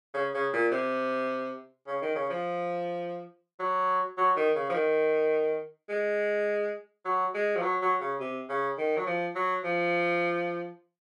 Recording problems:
none

